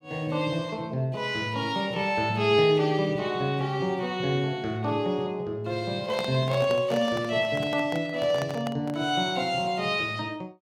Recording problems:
handling noise; from 6 to 9 s; peak -3 dB vs average level

